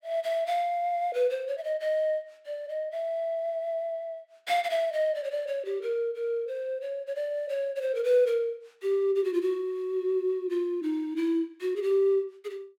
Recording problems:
none

